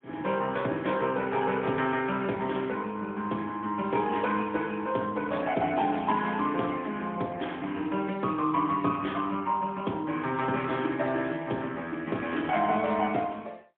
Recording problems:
telephone audio; 150 Hz to 3.5 kHz, AMR-NB, then MP3

